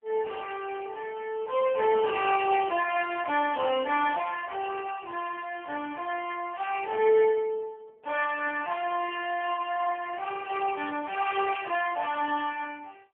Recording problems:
phone line; 300 Hz to 3.1 kHz, AMR-NB

